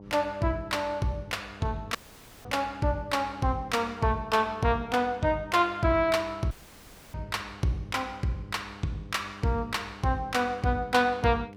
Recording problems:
electrical hum; 50 Hz, harmonics up to 1 kHz, SNR 19 dB
dropout; at 2 s for 0.5 s and at 6.5 s for 0.5 s

